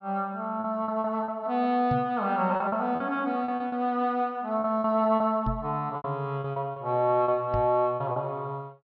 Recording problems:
low-pass filter; nothing above 6 kHz
packet loss; 10% of the sound replaced, filled with repeated pitch periods
microphone bump; at 2 s, at 5.5 s and at 7.5 s; peak +1 dB vs average level

